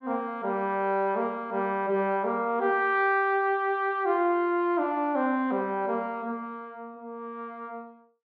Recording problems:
none

